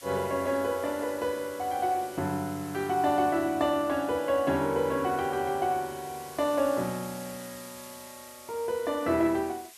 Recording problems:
background hiss; slope +3 dB per octave, SNR 18 dB

